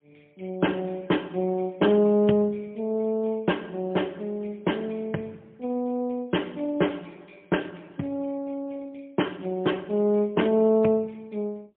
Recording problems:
telephone audio; 110 Hz to 3.4 kHz, AMR-NB, then MP3

